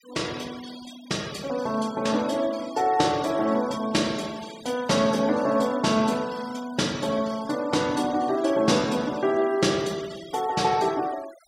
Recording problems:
noise reduction artefacts; signal-to-artefact ratio 19 dB

